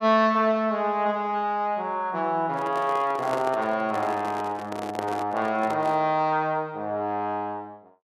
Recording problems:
handling noise; from 2.5 to 6 s; peak -2 dB vs average level

